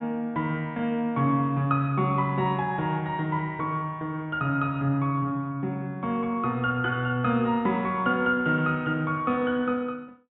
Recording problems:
low-pass filter; nothing above 3.8 kHz

